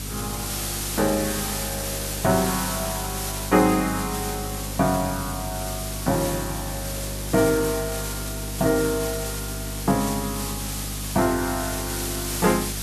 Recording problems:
hum; 50 Hz, harmonics up to 500 Hz, SNR 9 dB
hiss; slope 0 dB per octave, SNR 4 dB

